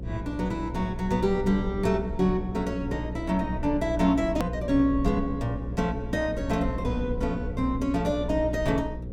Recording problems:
hum; 60 Hz, harmonics up to 540 Hz, SNR 8 dB
low-frequency rumble; below 76 Hz, SNR 13 dB
hard cut with a click; at 4.5 s

